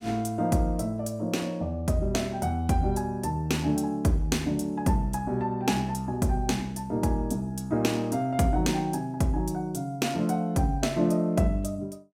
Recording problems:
none

